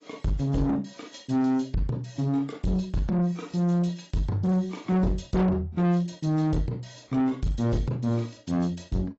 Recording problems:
lossy codec; AAC, log-spectral distance 3 dB, nothing above 7.3 kHz
distorted audio; soft clipping, signal-to-distortion ratio 7 dB

